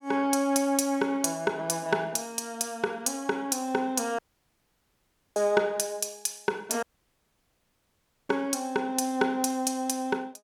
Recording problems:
dropout; at 4 s for 1 s and at 7 s for 1.5 s

